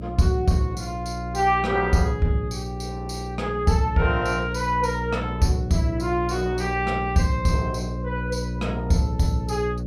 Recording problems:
hum; 60 Hz, harmonics up to 600 Hz, SNR 7 dB

